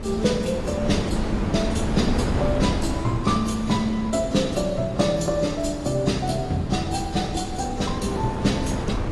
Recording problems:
lossy compression; AAC, log-spectral distance 3 dB, nothing above 11.3 kHz
wind noise; below 440 Hz, SNR 5 dB

